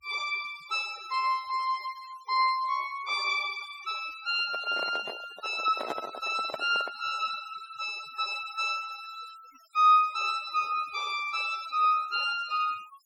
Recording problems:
noise reduction artefacts; signal-to-artefact ratio 21 dB
handling noise; from 4.5 to 7 s; peak -1 dB vs average level

